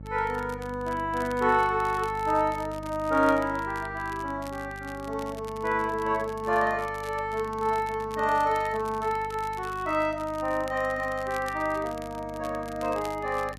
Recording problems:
hum; 50 Hz, harmonics up to 600 Hz, SNR 16 dB
crackling; vinyl, SNR 21 dB

